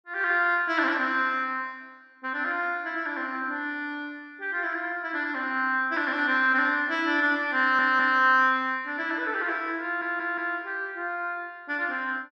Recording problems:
stutter; at 7.5 s and at 10 s

